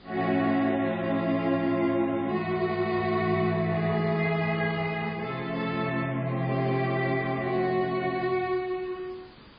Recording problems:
codec artefacts; MP3, log-spectral distance 4 dB, nothing above 4.8 kHz
hiss; SNR 24 dB

